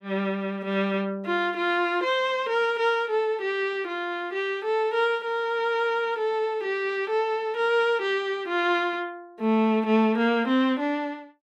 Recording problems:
none

